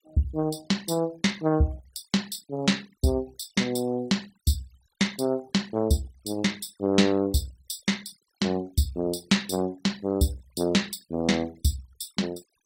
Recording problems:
denoising artefacts; signal-to-artefact ratio 23 dB

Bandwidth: 16 kHz